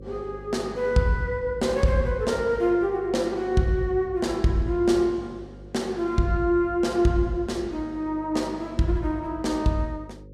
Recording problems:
hum; 50 Hz, harmonics up to 550 Hz, SNR 20 dB

